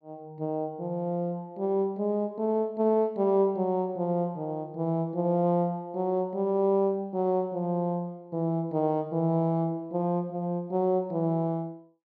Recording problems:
none

